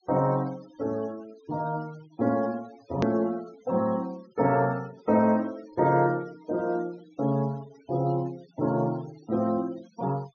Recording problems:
treble missing; nothing above 6.5 kHz
denoising artefacts; signal-to-artefact ratio 23 dB
click at an edit; at 3 s

